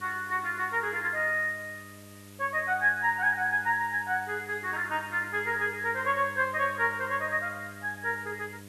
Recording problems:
hum; 50 Hz, harmonics up to 1.2 kHz, SNR 20 dB
hiss; slope +1 dB per octave, SNR 23 dB

